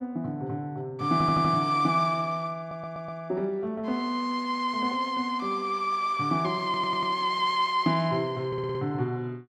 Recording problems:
stutter; 4 times, first at 1 s

